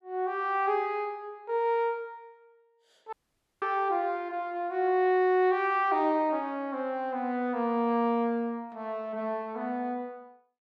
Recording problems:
audio cutting out; at 3 s

